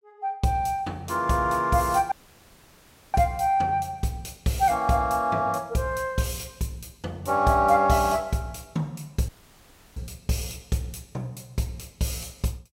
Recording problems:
dropout; at 2 s for 1 s and at 9.5 s for 0.5 s

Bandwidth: 16 kHz